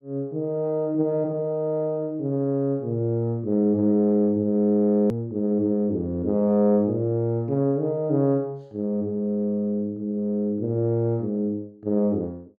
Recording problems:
edit click; at 5 s

